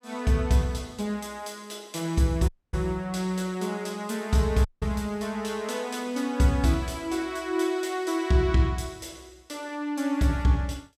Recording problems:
dropout; at 2.5 s and at 4.5 s

